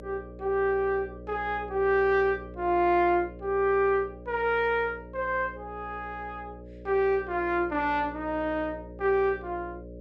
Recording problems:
mains hum; 60 Hz, harmonics up to 600 Hz, SNR 16 dB

